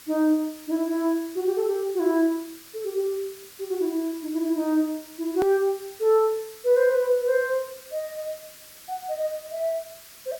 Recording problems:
background hiss; SNR 19 dB
click at an edit; at 5.5 s

